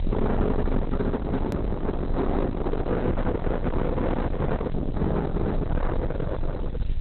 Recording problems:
lossy compression; Opus, log-spectral distance 6 dB
distorted audio; soft clipping, signal-to-distortion ratio 6 dB
hiss; SNR 27 dB
rumble; below 210 Hz, strongest tone 24 Hz, SNR 2 dB
hard cut with a click; at 1.5 s

